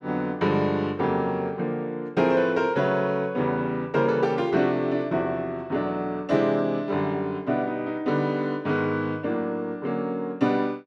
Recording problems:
none

